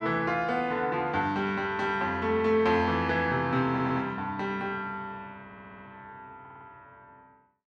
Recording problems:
audio stuttering; at 3.5 s, at 5.5 s and at 6.5 s

